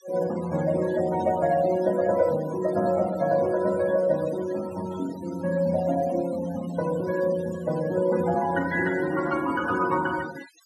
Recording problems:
denoising artefacts; signal-to-artefact ratio 17 dB

